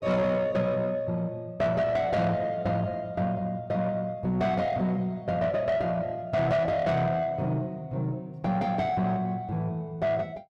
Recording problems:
distortion; soft clipping, signal-to-distortion ratio 10 dB

